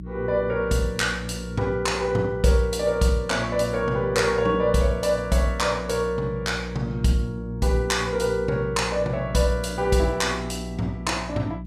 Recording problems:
hum; 60 Hz, harmonics up to 360 Hz, SNR 11 dB

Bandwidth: 14.5 kHz